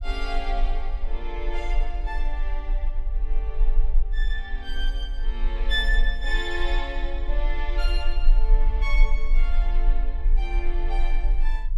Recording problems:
low-frequency rumble; below 36 Hz, strongest tone 22 Hz, SNR -5 dB

